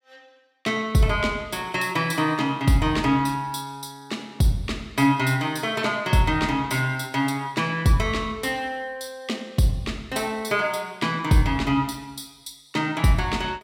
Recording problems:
none

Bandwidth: 16.5 kHz